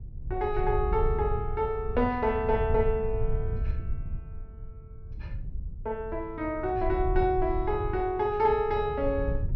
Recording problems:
treble missing; nothing above 6 kHz
rumble; below 84 Hz, SNR 7 dB

